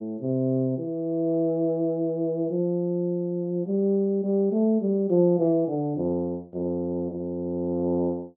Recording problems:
none

